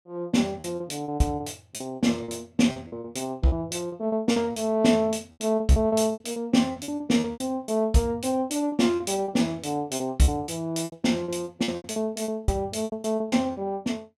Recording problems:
packet loss; 15% of the sound replaced, filled with repeated pitch periods

